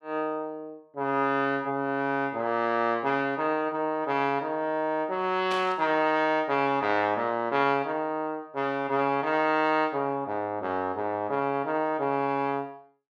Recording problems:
static burst; at 5.5 s; peak -5 dB vs average level

